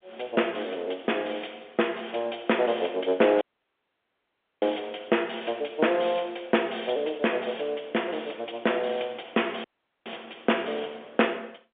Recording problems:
phone line; 260 Hz to 3.4 kHz, G.711
audio cutting out; at 3.5 s for 1 s and at 9.5 s

